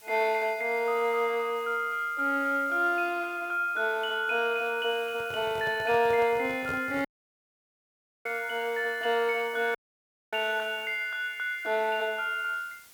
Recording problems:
background hiss; slope +1 dB per octave, SNR 24 dB
microphone handling noise; from 5 to 7 s; peak -7 dB vs average level
dropout; at 7 s for 1 s and at 10 s for 0.5 s

